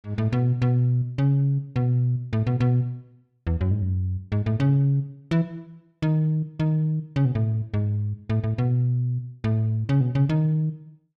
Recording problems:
none

